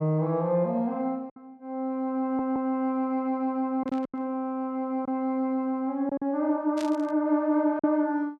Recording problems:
lost packets; 4% of the sound replaced, filled with silence
stutter; at 2 s
static burst; at 4 s and at 7 s; peak -8 dB vs average level

